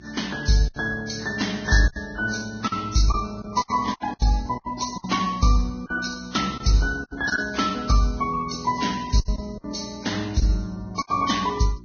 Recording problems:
codec artefacts; AAC, then Vorbis, log-spectral distance 5 dB, nothing above 6.5 kHz
hum; 60 Hz, harmonics up to 360 Hz, SNR 22 dB
lost packets; 9% of the sound replaced, filled with silence

